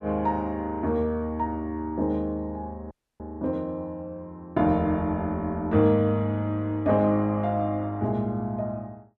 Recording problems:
audio cutting out; at 3 s

